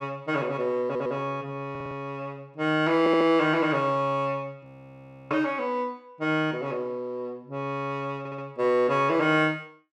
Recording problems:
audio stuttering; 4 times, first at 1 s
frozen audio; at 4.5 s for 0.5 s

